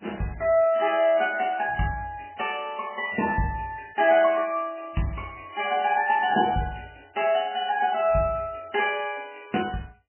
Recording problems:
codec artefacts; MP3, log-spectral distance 7 dB, nothing above 2.4 kHz

